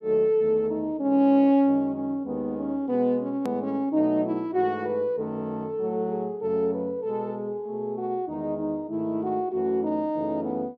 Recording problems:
click at an edit; at 3.5 s

